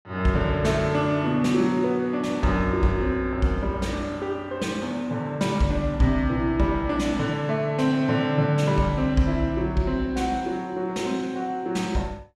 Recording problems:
none

